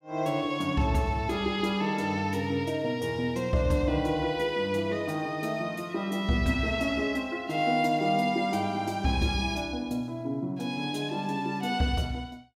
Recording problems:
none

